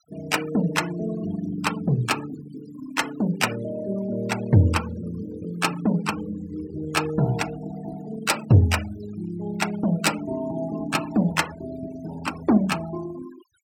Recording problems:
denoising artefacts; signal-to-artefact ratio 15 dB

